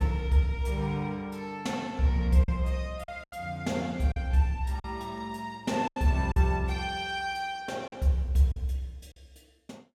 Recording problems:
lost packets; 5% of the sound replaced, filled with silence

